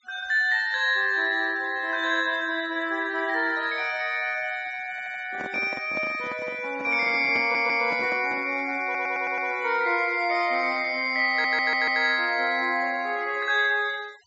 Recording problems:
treble cut off; nothing above 7.7 kHz
noise reduction artefacts; signal-to-artefact ratio 25 dB
stutter; 4 times, first at 5 s
microphone handling noise; from 5.5 to 8.5 s; peak -7 dB vs average level

